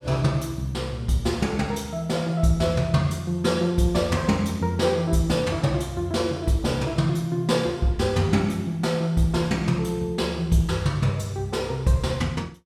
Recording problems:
none

